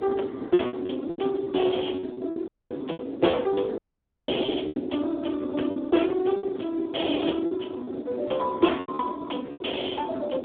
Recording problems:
phone line; 220 Hz to 3.5 kHz, Speex
wind on the microphone; below 390 Hz, SNR 8 dB
lost packets; 11% of the sound replaced, filled with repeated pitch periods
audio cutting out; at 2.5 s and at 4 s for 0.5 s

